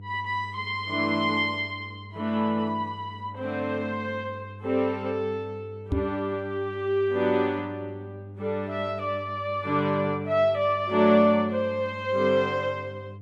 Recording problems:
hum; 50 Hz, harmonics up to 500 Hz, SNR 16 dB
microphone bump; at 6 s; peak +3 dB vs average level

